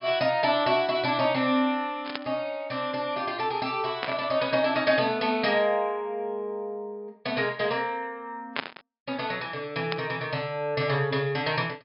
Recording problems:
treble cut off; nothing above 5.2 kHz
static burst; 4 times, first at 2 s; peak +2 dB vs average level

